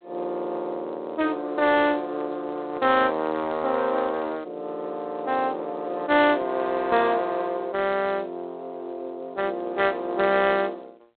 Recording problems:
phone line; 260 Hz to 3.7 kHz, G.726

